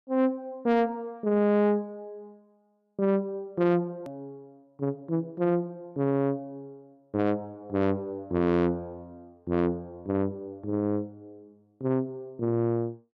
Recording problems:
distortion; soft clipping, signal-to-distortion ratio 12 dB
edit click; at 4 s

